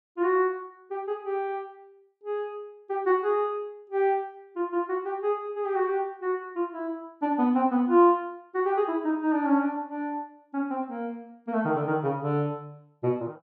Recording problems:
none

